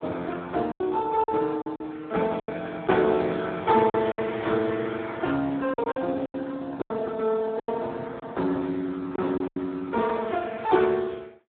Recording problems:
telephone audio; 170 Hz to 2.2 kHz, Speex
packet loss; 8% of the sound replaced, filled with silence

